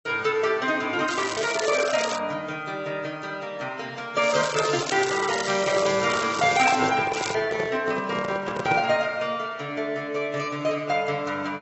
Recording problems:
codec artefacts; AAC, log-spectral distance 6 dB, nothing above 7.6 kHz
crackle; from 1 to 2 s, from 4 to 7 s and at 7 s; loose cable, SNR 9 dB
handling noise; from 5.5 to 9 s; peak +1 dB vs average level

